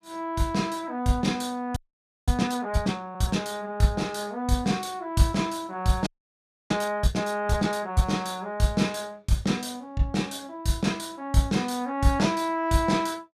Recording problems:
frozen audio; at 2 s for 0.5 s and at 6 s for 0.5 s

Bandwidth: 14.5 kHz